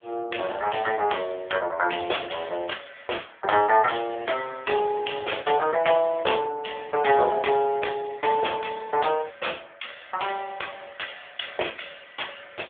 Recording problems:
telephone audio; 340 Hz to 3.4 kHz, AMR-NB

